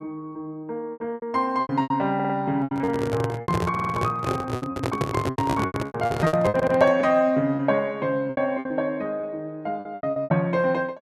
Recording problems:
packet loss; 15% of the sound replaced, filled with repeated pitch periods
audio stuttering; at 2 s, at 3.5 s and at 6.5 s
microphone handling noise; from 2.5 to 7 s; peak +3 dB vs average level

